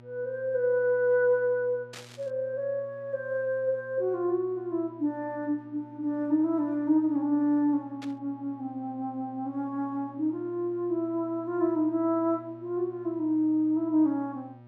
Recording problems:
electrical hum; 60 Hz, harmonics up to 1.2 kHz, SNR 23 dB
static burst; at 2 s and at 8 s; peak -10 dB vs average level

